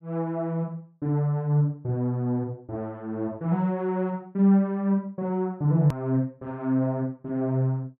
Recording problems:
click at an edit; at 6 s

